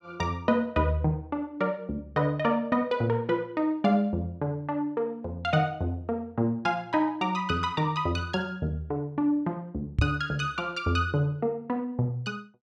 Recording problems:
microphone bump; at 10 s; peak +7 dB vs average level

